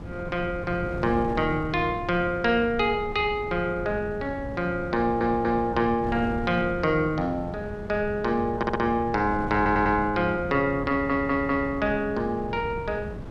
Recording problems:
wind on the microphone; below 270 Hz, SNR 12 dB
stutter; 4 times, first at 5 s

